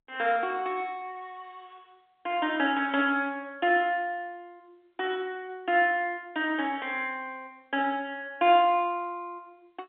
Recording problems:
phone line; 300 Hz to 3.6 kHz, G.711

